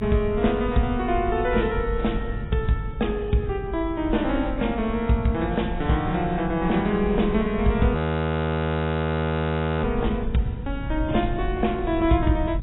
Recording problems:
lossy codec; AAC, log-spectral distance 3 dB, nothing above 3.8 kHz
hum; 50 Hz, harmonics up to 550 Hz, SNR 21 dB
rumble; below 100 Hz, SNR 8 dB
frozen audio; at 8 s for 2 s

